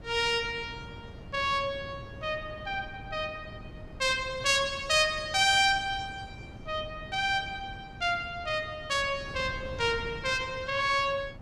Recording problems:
wind noise; below 260 Hz, SNR 17 dB

